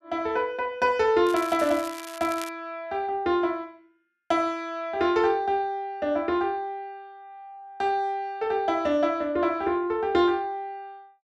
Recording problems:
crackling; from 1.5 to 2.5 s; loose cable, SNR 15 dB

